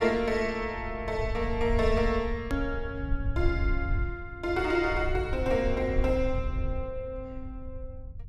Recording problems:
low-frequency rumble; below 78 Hz, SNR 5 dB
edit click; at 2.5 s

